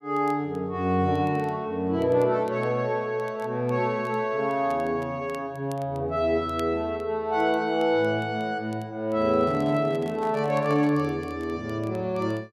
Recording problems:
crackle; vinyl, SNR 30 dB
handling noise; from 9 to 11 s; peak -9 dB vs average level

